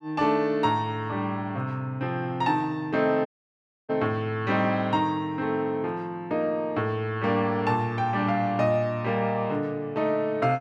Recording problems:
dropout; at 3.5 s for 0.5 s

